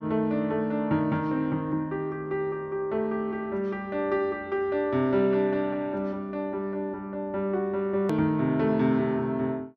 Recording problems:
click at an edit; at 8 s

